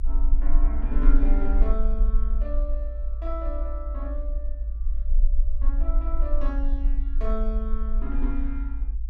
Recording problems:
rumble; below 42 Hz, strongest tone 18 Hz, SNR -8 dB

